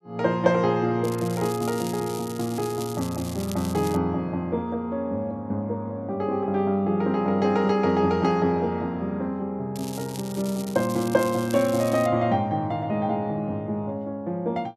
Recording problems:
crackle; from 1 to 4 s and from 9.5 to 12 s; loose cable, SNR 15 dB

